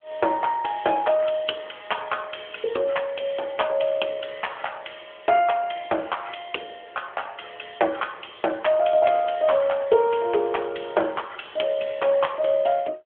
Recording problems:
phone line; 280 Hz to 3.3 kHz, AMR-NB

